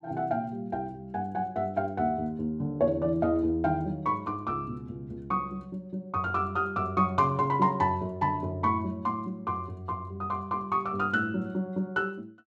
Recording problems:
none

